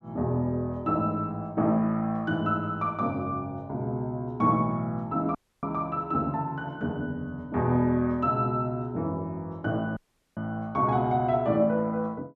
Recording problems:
audio cutting out; at 5.5 s and at 10 s

